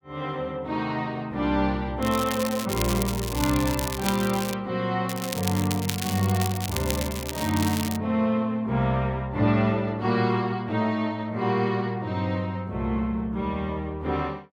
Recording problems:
crackling; from 2 to 4.5 s and from 5 to 8 s; loose cable, SNR 7 dB

